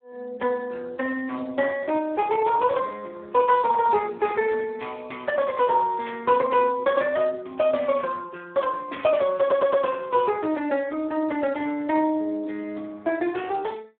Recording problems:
telephone audio; 300 Hz to 2.9 kHz, Speex
burst of static; at 6 s and at 9 s; peak -9 dB vs average level
stutter; at 9.5 s

